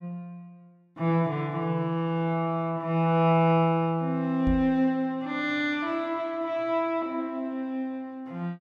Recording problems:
microphone bump; at 4.5 s; peak -1 dB vs average level

